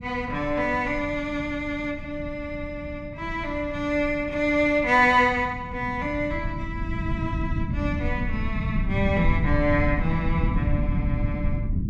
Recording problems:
low-frequency rumble; below 160 Hz, SNR 5 dB

